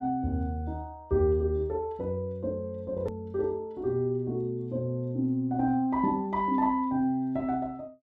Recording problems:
hard cut with a click; at 3 s

